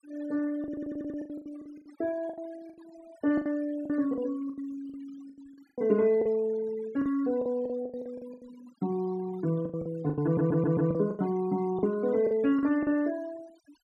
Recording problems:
noise reduction artefacts; signal-to-artefact ratio 22 dB
lost packets; 15% of the sound replaced, filled with the last packet
audio stuttering; at 0.5 s and at 10 s

